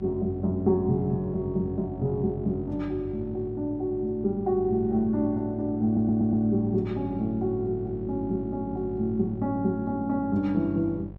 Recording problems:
hum; 50 Hz, harmonics up to 750 Hz, SNR 15 dB
stutter; at 6 s

